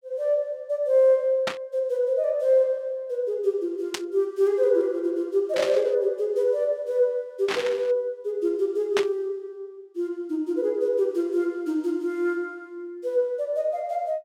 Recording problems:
static burst; 5 times, first at 1.5 s; peak +1 dB vs average level

